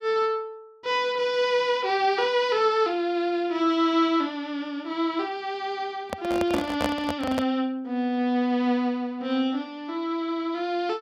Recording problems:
handling noise; from 6 to 7.5 s; peak +2 dB vs average level

